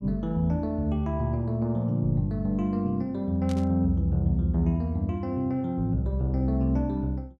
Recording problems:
static burst; at 3.5 s; peak -12 dB vs average level

